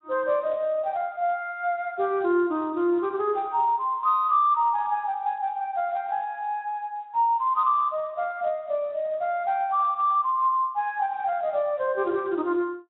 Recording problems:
low-pass filter; nothing above 3.8 kHz
codec artefacts; Speex, log-spectral distance 2 dB

